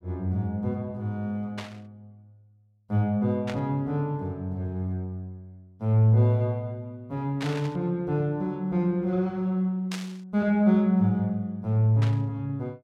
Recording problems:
static burst; 5 times, first at 1.5 s; peak -6 dB vs average level

